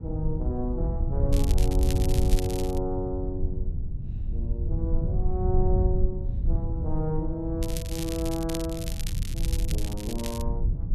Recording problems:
low-frequency rumble; below 86 Hz, SNR -3 dB
crackle; from 1.5 to 3 s and from 7.5 to 10 s; loose cable, SNR 7 dB

